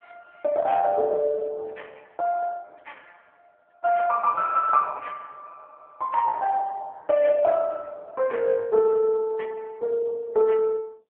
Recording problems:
telephone audio; 340 Hz to 2.3 kHz, AMR-NB

